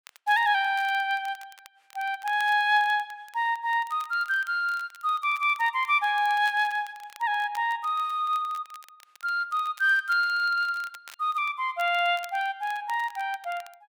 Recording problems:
crackle; vinyl, SNR 25 dB

